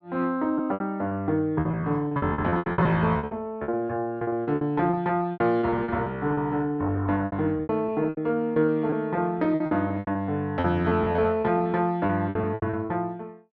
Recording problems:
packet loss; 19% of the sound replaced, filled with repeated pitch periods

